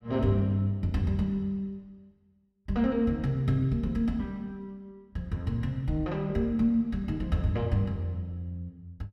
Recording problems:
none

